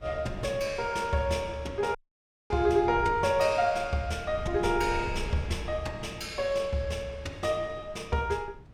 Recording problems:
wind noise; below 110 Hz, SNR 15 dB
dropout; at 2 s for 0.5 s

